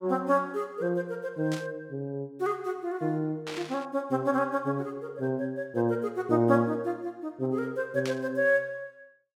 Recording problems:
burst of static; at 1.5 s, at 3.5 s and at 8 s; peak -4 dB vs average level

